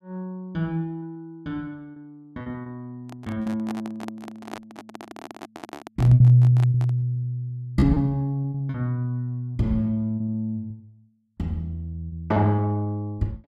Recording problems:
packet loss; 10% of the sound replaced, filled with repeated pitch periods
microphone handling noise; from 3 to 7 s; peak -7 dB vs average level

